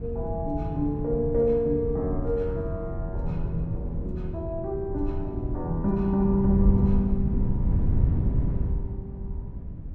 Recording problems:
wind noise; below 130 Hz, SNR 2 dB

